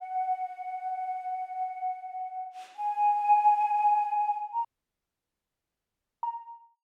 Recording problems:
audio cutting out; at 4.5 s for 1.5 s

